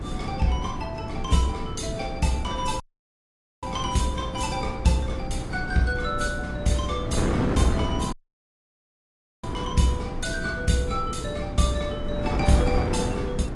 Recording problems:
lossy compression; AAC, log-spectral distance 3 dB, nothing above 11 kHz
hum; 60 Hz, harmonics up to 360 Hz, SNR 12 dB
rumble; below 80 Hz, strongest tone 20 Hz, SNR 14 dB
wind noise; below 380 Hz, SNR 5 dB
dropout; at 3 s for 1 s and at 8 s for 1.5 s

